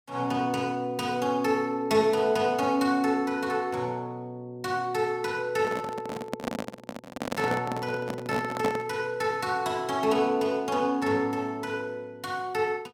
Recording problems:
handling noise; from 5.5 to 9 s; peak +2 dB vs average level

